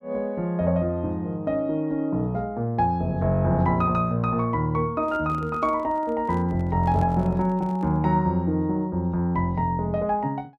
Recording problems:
handling noise; from 5 to 8 s; peak -10 dB vs average level

